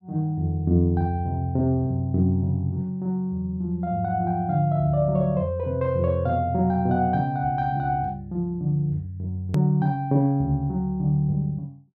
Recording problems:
hard cut with a click; at 9.5 s

